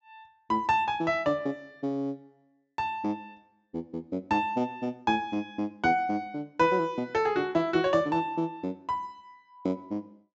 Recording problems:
treble missing; nothing above 8 kHz

